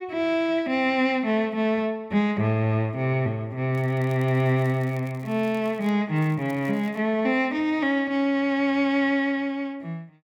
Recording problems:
crackling; from 3.5 to 6 s and at 6 s; loose cable, SNR 29 dB

